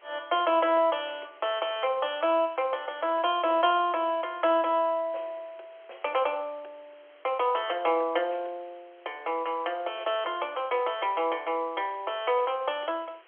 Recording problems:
phone line; 300 Hz to 3.3 kHz, G.711
background hiss; SNR 29 dB

